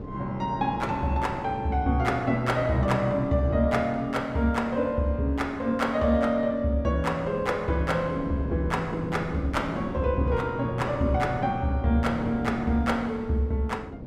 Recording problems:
wind on the microphone; below 350 Hz, SNR 11 dB

